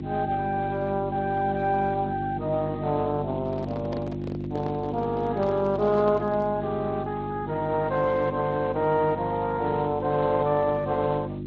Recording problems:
lossy codec; Speex, then Vorbis, log-spectral distance 3 dB
hum; 50 Hz, harmonics up to 350 Hz, SNR 6 dB
handling noise; from 3.5 to 6.5 s; peak -4 dB vs average level

